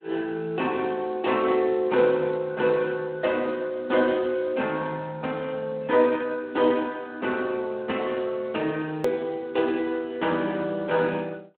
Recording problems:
phone line; 260 Hz to 3.6 kHz, Speex
edit click; at 9 s

